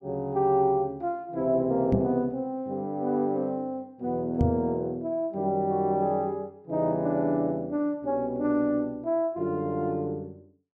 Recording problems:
knock on the microphone; at 2 s and at 4.5 s; peak +6 dB vs average level

